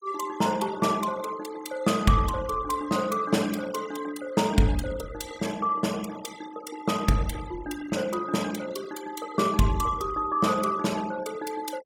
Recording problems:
denoising artefacts; signal-to-artefact ratio 17 dB

